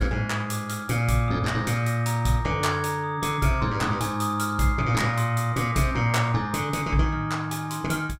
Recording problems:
none

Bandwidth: 16 kHz